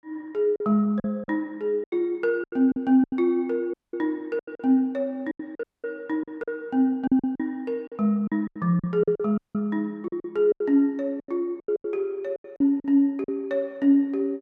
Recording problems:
lost packets; 12% of the sound replaced, filled with silence
dropout; at 3.5 s, at 5.5 s and at 9.5 s

